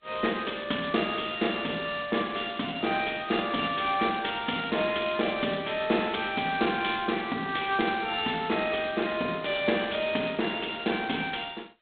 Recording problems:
phone line; 220 Hz to 3.9 kHz, G.726

